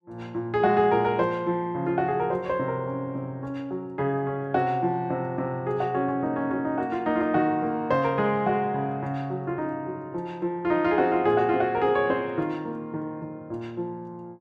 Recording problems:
none

